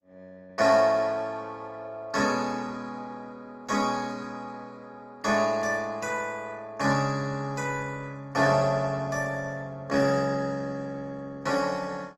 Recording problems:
codec artefacts; Opus, log-spectral distance 3 dB, nothing above 16.1 kHz

